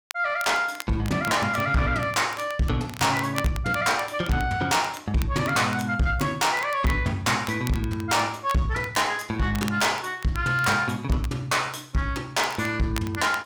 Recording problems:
distortion; soft clipping, signal-to-distortion ratio 11 dB
crackling; vinyl, SNR 17 dB

